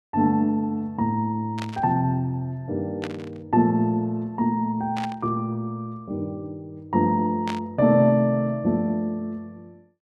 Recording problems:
static burst; 4 times, first at 1.5 s; peak -6 dB vs average level

